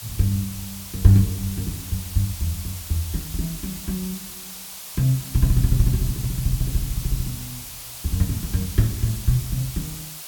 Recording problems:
background hiss; slope +1 dB per octave, SNR 10 dB

